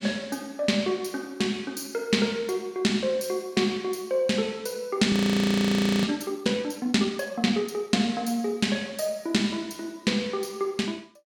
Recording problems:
audio freezing; at 5 s for 1 s

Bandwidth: 17.5 kHz